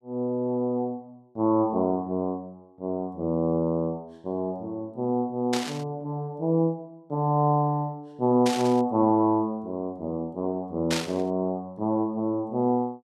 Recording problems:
burst of static; at 5.5 s, at 8.5 s and at 11 s; peak +2 dB vs average level

